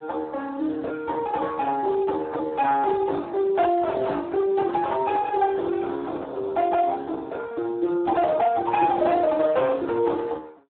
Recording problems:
phone line; 280 Hz to 2.8 kHz, Speex
distorted audio; hard clipping, signal-to-distortion ratio 13 dB

